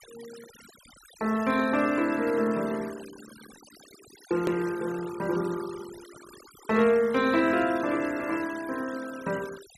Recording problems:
denoising artefacts; signal-to-artefact ratio 19 dB
hard cut with a click; at 4.5 s

